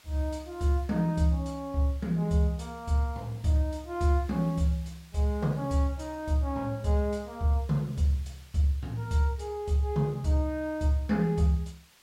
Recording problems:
hiss; slope +1 dB per octave, SNR 27 dB

